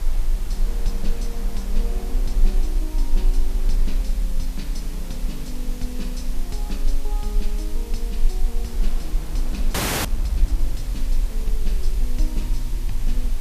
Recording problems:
hiss; SNR 5 dB
low-frequency rumble; below 36 Hz, strongest tone 26 Hz, SNR -10 dB
wind noise; below 620 Hz, SNR 7 dB
frozen audio; at 9.5 s

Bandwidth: 14.5 kHz